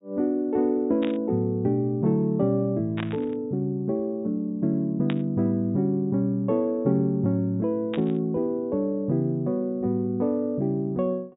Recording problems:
low-pass filter; nothing above 4 kHz
static burst; 4 times, first at 1 s; peak -5 dB vs average level

